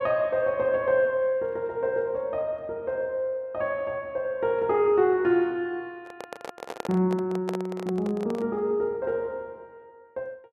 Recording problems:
microphone handling noise; from 6 to 8.5 s; peak -3 dB vs average level

